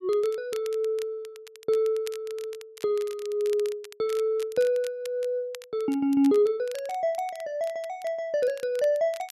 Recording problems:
crackle; vinyl, SNR 20 dB

